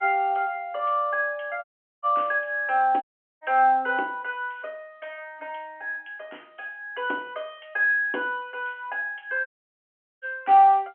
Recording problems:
telephone audio; 280 Hz to 3.4 kHz, G.711
dropout; at 1.5 s, at 3 s and at 9.5 s for 1 s

